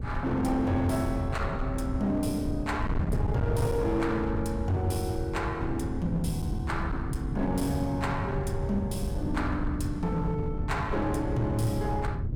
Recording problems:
distorted audio; hard clipping, signal-to-distortion ratio 10 dB
wind noise; below 150 Hz, SNR 3 dB

